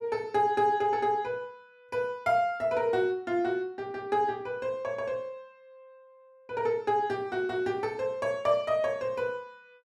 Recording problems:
none

